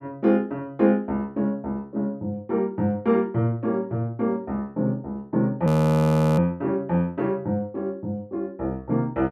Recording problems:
frozen audio; at 5.5 s for 0.5 s

